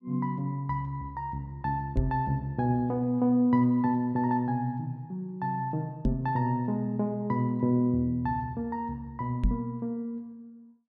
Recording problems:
microphone thump; at 2 s, at 6 s and at 9.5 s; peak +5 dB vs average level

